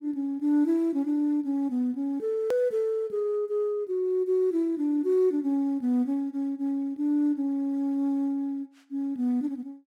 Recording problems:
click at an edit; at 2.5 s

